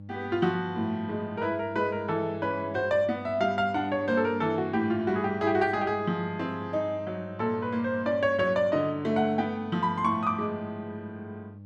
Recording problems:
hum; 50 Hz, harmonics up to 600 Hz, SNR 16 dB

